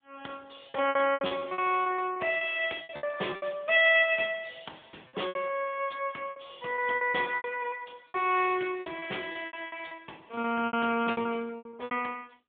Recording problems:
phone line; 300 Hz to 3.6 kHz, AMR-NB
packet loss; 16% of the sound replaced, filled with repeated pitch periods

